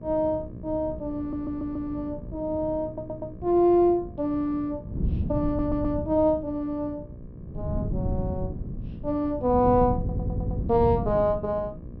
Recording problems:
treble missing; nothing above 5.9 kHz
hum; 60 Hz, harmonics up to 1.2 kHz, SNR 21 dB
wind on the microphone; below 180 Hz, SNR 8 dB
stutter; 4 times, first at 1 s

